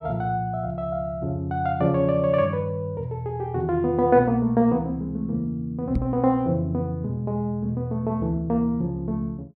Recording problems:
knock on the microphone; at 6 s; peak +1 dB vs average level

